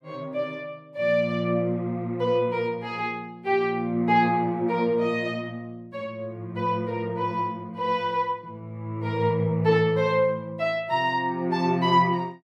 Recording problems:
none

